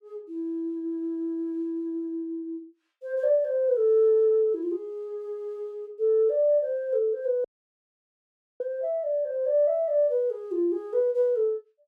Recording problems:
dropout; at 7.5 s for 1 s

